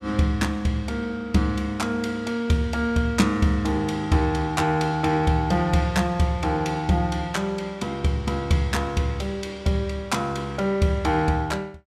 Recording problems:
none

